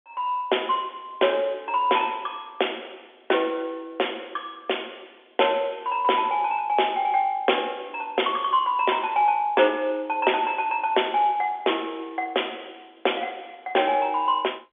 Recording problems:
telephone audio; 300 Hz to 3.5 kHz, G.711

